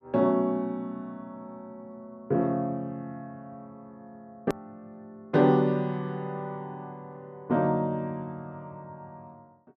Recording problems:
hard cut with a click; at 4.5 s

